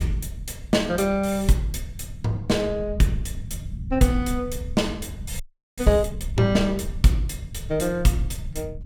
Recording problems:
rumble; below 100 Hz, SNR 11 dB
frozen audio; at 5.5 s

